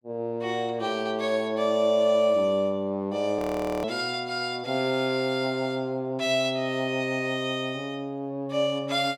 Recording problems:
audio freezing; at 3.5 s

